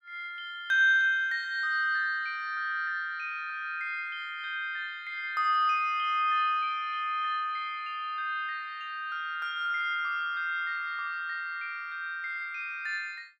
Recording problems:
none

